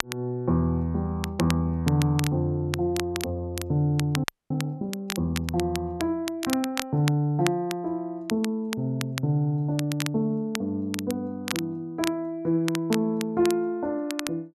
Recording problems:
crackling; vinyl, SNR 9 dB
frozen audio; at 4 s

